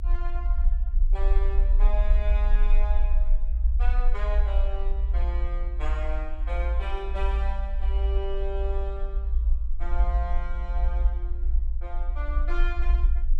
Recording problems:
rumble; below 56 Hz, SNR -10 dB

